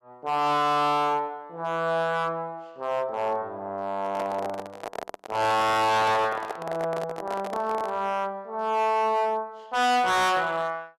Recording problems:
distortion; hard clipping, signal-to-distortion ratio 6 dB
microphone handling noise; from 4 to 8 s; peak -3 dB vs average level

